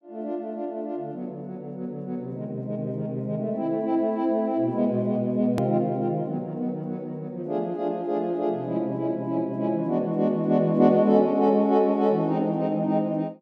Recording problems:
click at an edit; at 5.5 s

